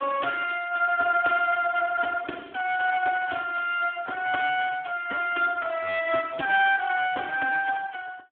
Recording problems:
phone line; 260 Hz to 2.8 kHz, Speex

